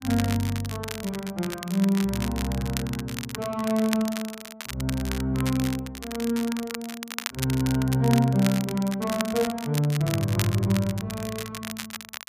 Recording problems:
crackle; vinyl, SNR 9 dB

